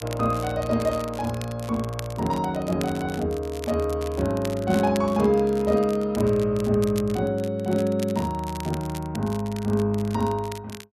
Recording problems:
crackling; vinyl, SNR 18 dB

